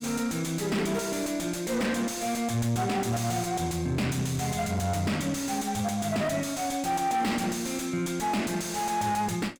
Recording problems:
distortion; soft clipping, signal-to-distortion ratio 7 dB

